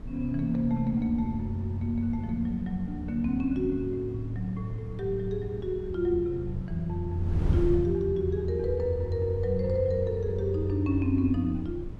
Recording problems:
wind on the microphone; below 140 Hz, SNR 10 dB

